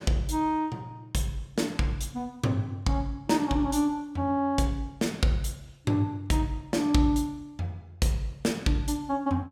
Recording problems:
none

